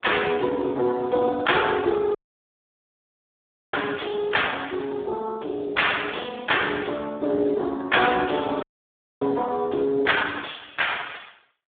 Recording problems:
phone line; 240 Hz to 3.7 kHz, Speex
distorted audio; soft clipping, signal-to-distortion ratio 12 dB
dropout; at 2 s for 1.5 s and at 8.5 s for 0.5 s

